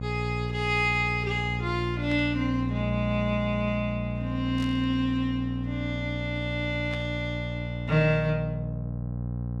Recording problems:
hum; 60 Hz, harmonics up to 780 Hz, SNR 4 dB
static burst; at 2 s, at 4.5 s and at 7 s; peak -10 dB vs average level

